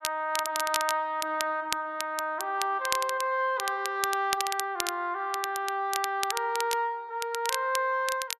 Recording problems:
crackle; vinyl, SNR 6 dB

